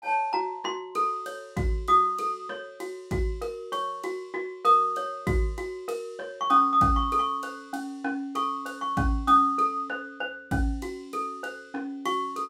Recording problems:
none

